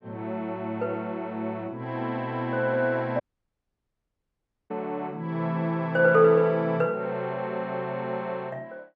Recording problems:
dropout; at 3 s for 1.5 s

